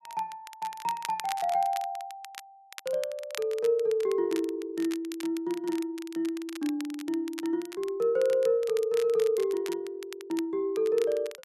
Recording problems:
crackling; vinyl, SNR 16 dB

